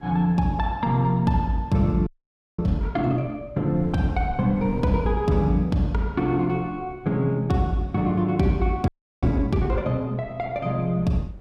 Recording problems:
wind noise; below 150 Hz, SNR 20 dB
audio freezing; at 2 s for 0.5 s and at 9 s

